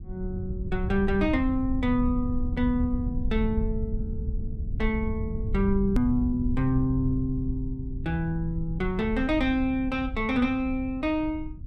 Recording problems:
rumble; below 90 Hz, SNR 6 dB
click at an edit; at 6 s

